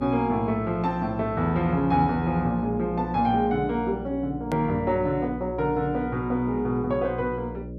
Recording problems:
hum; 60 Hz, harmonics up to 600 Hz, SNR 11 dB
click at an edit; at 4.5 s

